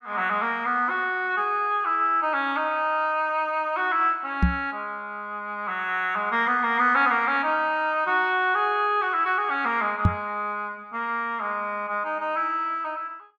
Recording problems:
microphone thump; at 4.5 s and at 10 s; peak +8 dB vs average level

